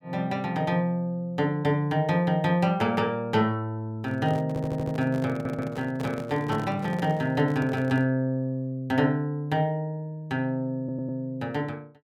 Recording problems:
handling noise; from 4 to 8 s; peak -5 dB vs average level
stutter; at 4.5 s, at 5.5 s and at 11 s

